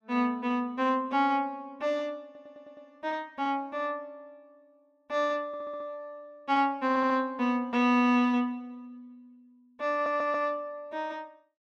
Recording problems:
stutter; 4 times, first at 2.5 s

